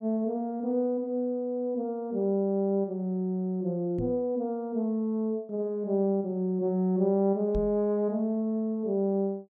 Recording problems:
knock on the microphone; at 4 s and at 7.5 s; peak -2 dB vs average level

